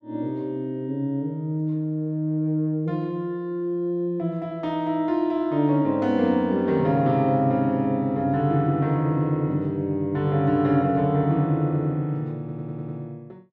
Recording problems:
stutter; at 12 s

